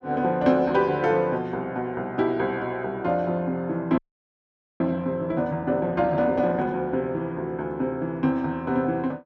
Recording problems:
audio freezing; at 4 s for 1 s

